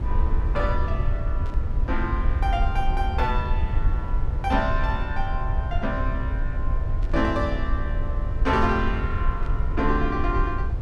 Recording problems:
rumble; below 70 Hz, SNR -1 dB
static burst; at 1.5 s, at 7 s and at 9.5 s; peak -15 dB vs average level

